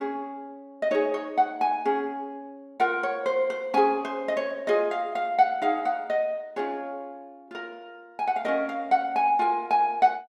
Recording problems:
none

